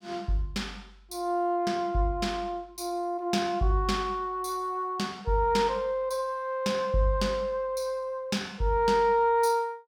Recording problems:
none

